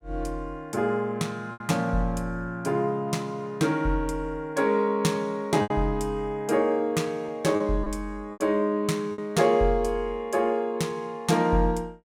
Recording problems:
lost packets; 3% of the sound replaced, filled with repeated pitch periods

